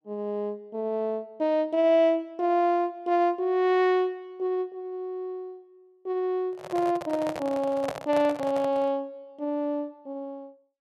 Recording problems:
handling noise; from 6.5 to 9 s; peak -2 dB vs average level

